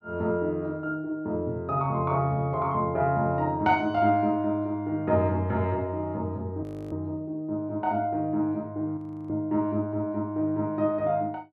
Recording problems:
frozen audio; at 6.5 s and at 9 s

